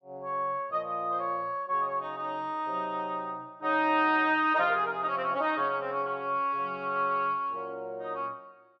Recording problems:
none

